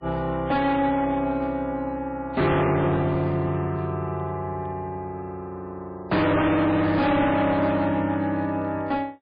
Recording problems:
codec artefacts; MP3, log-spectral distance 2 dB, nothing above 4.5 kHz
distortion; hard clipping, uneven, signal-to-distortion ratio 6 dB

